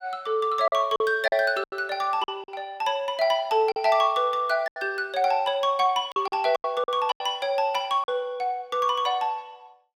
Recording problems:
packet loss; 8% of the sound replaced, filled with silence

